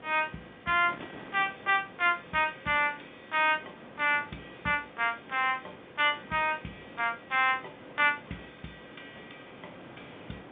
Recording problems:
telephone audio; 130 Hz to 3.7 kHz, G.711
wind noise; below 1.2 kHz, SNR 21 dB

